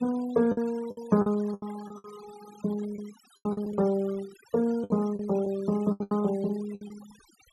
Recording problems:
denoising artefacts; signal-to-artefact ratio 20 dB
lost packets; 12% of the sound replaced, filled with the last packet

